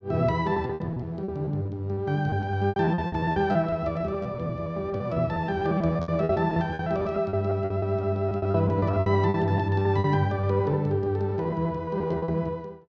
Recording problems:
lost packets; 17% of the sound replaced, filled with repeated pitch periods

